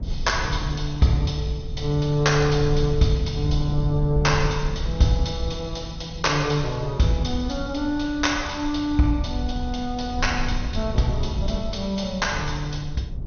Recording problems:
lossy compression; MP2, log-spectral distance 4 dB, nothing above 6.3 kHz
low-frequency rumble; below 92 Hz, SNR 8 dB

